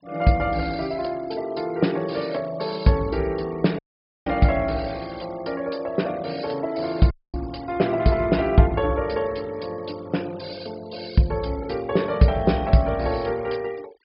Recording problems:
low-pass filter; nothing above 5.5 kHz
noise reduction artefacts; signal-to-artefact ratio 22 dB
dropout; at 4 s and at 7 s

